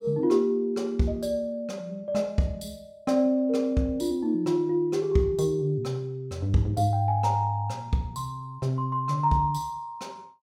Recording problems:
none

